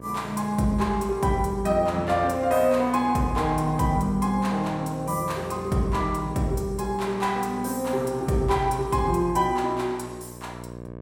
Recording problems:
hum; 60 Hz, harmonics up to 1.3 kHz, SNR 16 dB

